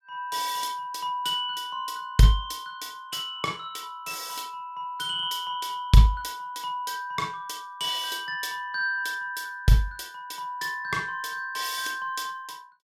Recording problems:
none

